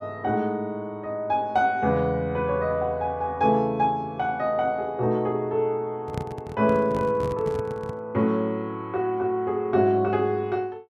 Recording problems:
microphone handling noise; from 6 to 8 s; peak -1 dB vs average level

